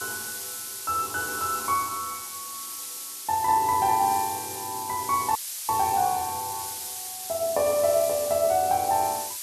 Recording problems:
background hiss; slope +5 dB per octave, SNR 7 dB
audio freezing; at 5.5 s

